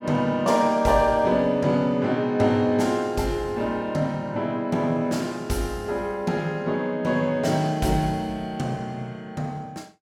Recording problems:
none

